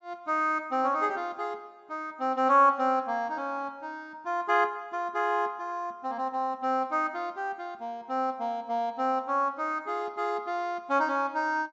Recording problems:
treble cut off; nothing above 8 kHz

